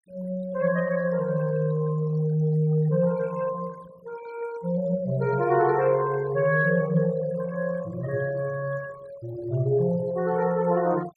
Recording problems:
denoising artefacts; signal-to-artefact ratio 22 dB

